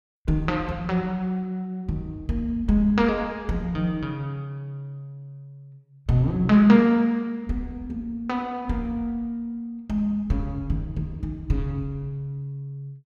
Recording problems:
none

